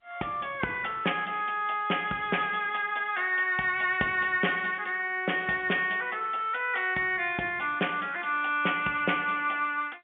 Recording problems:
telephone audio; 220 Hz to 3.5 kHz, G.711

